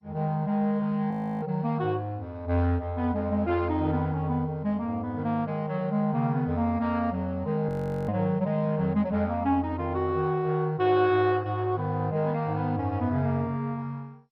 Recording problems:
codec artefacts; MP2, log-spectral distance 2 dB, nothing above 15.1 kHz
frozen audio; at 1 s and at 7.5 s

